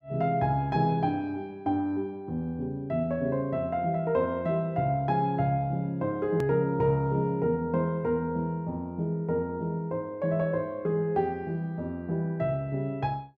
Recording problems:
hard cut with a click; at 6.5 s

